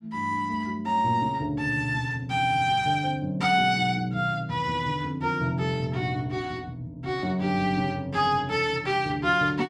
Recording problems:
none

